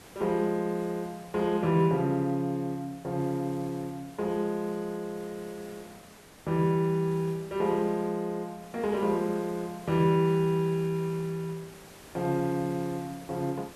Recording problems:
hiss; slope -4 dB per octave, SNR 21 dB

